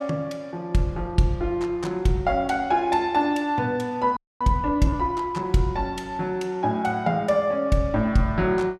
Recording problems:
audio freezing; at 4 s

